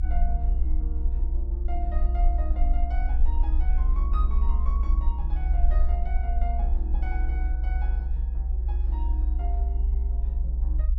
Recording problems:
low-frequency rumble; below 60 Hz, SNR -14 dB

